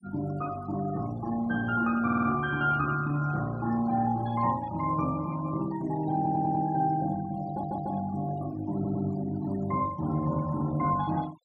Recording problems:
denoising artefacts; signal-to-artefact ratio 19 dB
audio stuttering; 4 times, first at 2 s

